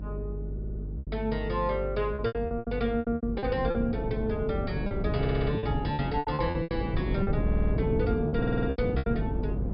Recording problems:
low-pass filter; nothing above 5.5 kHz
hum; 50 Hz, harmonics up to 450 Hz, SNR 6 dB
wind noise; below 260 Hz, SNR 1 dB
packet loss; 13% of the sound replaced, filled with repeated pitch periods
audio stuttering; 4 times, first at 0.5 s

